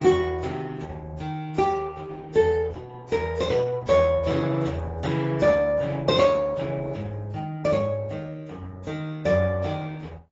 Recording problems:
lossy codec; Opus, then AAC, log-spectral distance 3 dB, nothing above 7.6 kHz

